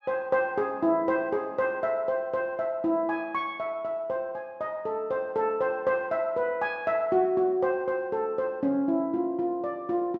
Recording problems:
none

